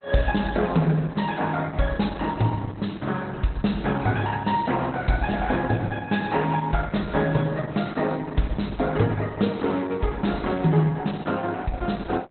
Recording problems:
lossy codec; Opus, log-spectral distance 4 dB, nothing above 4.1 kHz

